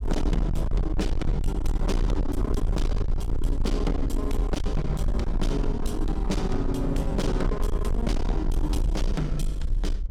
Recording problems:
distorted audio; hard clipping, uneven, signal-to-distortion ratio 7 dB
rumble; below 54 Hz, SNR 0 dB

